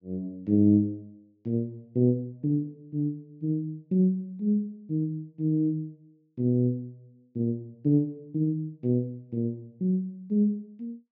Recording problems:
treble missing; nothing above 7.6 kHz

